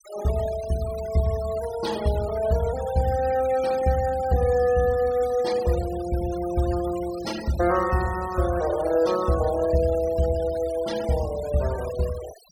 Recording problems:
noise reduction artefacts; signal-to-artefact ratio 17 dB

